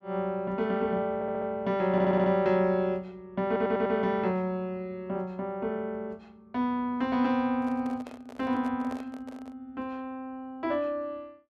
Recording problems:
stutter; at 1 s, at 2 s and at 3.5 s
microphone handling noise; from 7.5 to 9.5 s; peak -9 dB vs average level

